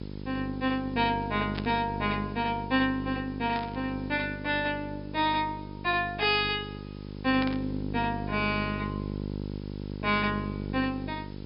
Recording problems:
treble missing; nothing above 5.5 kHz
electrical hum; 50 Hz, harmonics up to 900 Hz, SNR 7 dB
background hiss; slope +1 dB per octave, SNR 27 dB
burst of static; at 1.5 s, at 3.5 s and at 7.5 s; peak -4 dB vs average level

